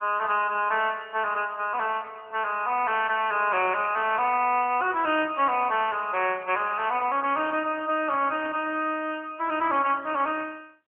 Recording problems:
telephone audio; 240 Hz to 3.3 kHz, AMR-NB

